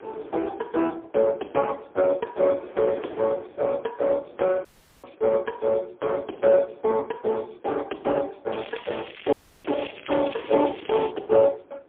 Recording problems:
telephone audio; 260 Hz to 3.8 kHz, AMR-NB, then MP3
wind noise; below 700 Hz, SNR 21 dB
dropout; at 4.5 s and at 9.5 s
crackling; from 8.5 to 11 s; loose cable, SNR 16 dB

